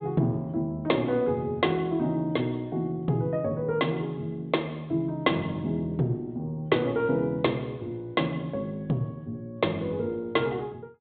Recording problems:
treble missing; nothing above 4 kHz

